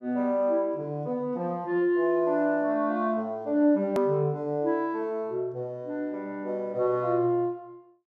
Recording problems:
hard cut with a click; at 4 s

